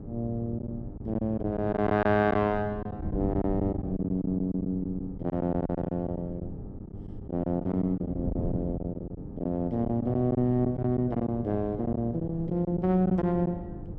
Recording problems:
hum; 50 Hz, harmonics up to 900 Hz, SNR 18 dB
wind noise; below 210 Hz, SNR 11 dB
lost packets; 9% of the sound replaced, filled with silence

